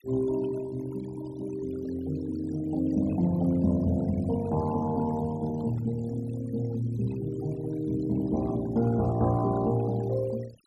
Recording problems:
denoising artefacts; signal-to-artefact ratio 20 dB

